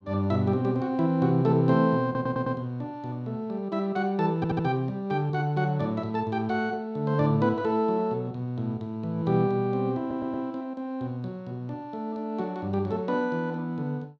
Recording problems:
stutter; at 2 s, at 4.5 s and at 10 s

